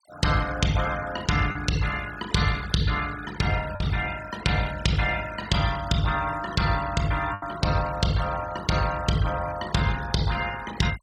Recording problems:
denoising artefacts; signal-to-artefact ratio 14 dB
packet loss; 1.4% of the sound replaced, filled with the last packet

